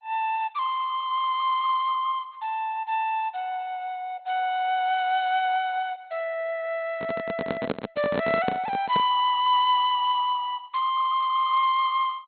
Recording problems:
lossy codec; MP2, log-spectral distance 3 dB, nothing above 4.2 kHz
handling noise; from 7 to 9 s; peak +2 dB vs average level

